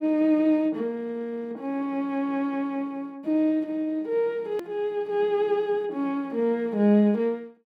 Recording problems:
edit click; at 4.5 s

